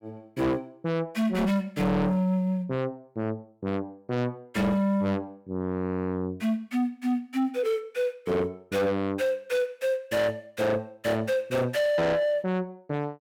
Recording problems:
distorted audio; soft clipping, signal-to-distortion ratio 7 dB

